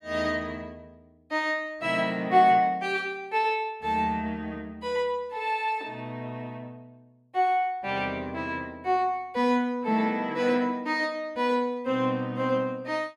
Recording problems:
none

